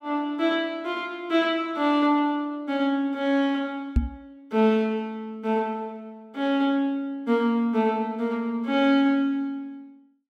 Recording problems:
knock on the microphone; at 4 s; peak +7 dB vs average level

